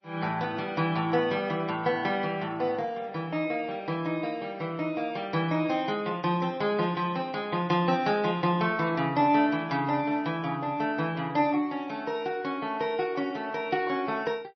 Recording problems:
lossy codec; MP3, log-spectral distance 2 dB, nothing above 5.3 kHz

